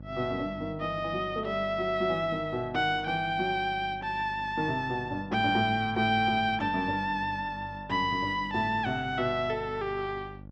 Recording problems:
electrical hum; 50 Hz, harmonics up to 850 Hz, SNR 17 dB

